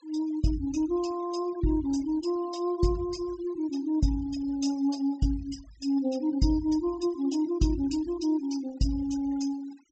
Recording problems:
treble cut off; nothing above 8 kHz
noise reduction artefacts; signal-to-artefact ratio 21 dB

